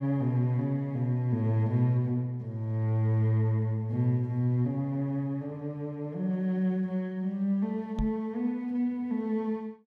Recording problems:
microphone thump; at 8 s; peak 0 dB vs average level

